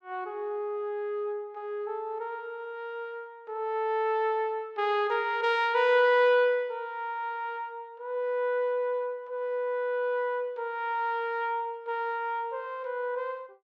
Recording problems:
none

